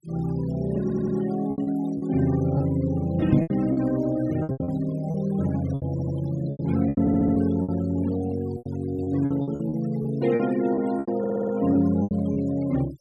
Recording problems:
denoising artefacts; signal-to-artefact ratio 20 dB
lost packets; 12% of the sound replaced, filled with repeated pitch periods
stutter; 4 times, first at 1 s
microphone thump; at 3.5 s; peak +8 dB vs average level

